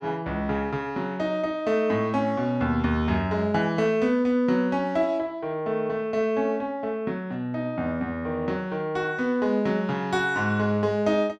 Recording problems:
none

